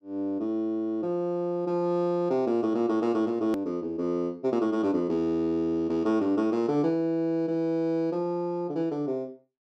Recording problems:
click at an edit; at 3.5 s

